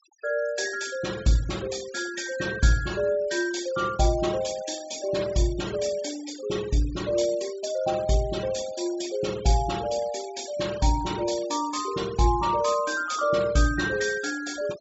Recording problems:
treble cut off; nothing above 8 kHz
denoising artefacts; signal-to-artefact ratio 16 dB

